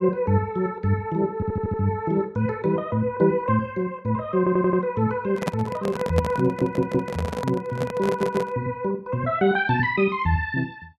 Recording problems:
audio stuttering; 4 times, first at 1.5 s
handling noise; from 5.5 to 8.5 s; peak +2 dB vs average level

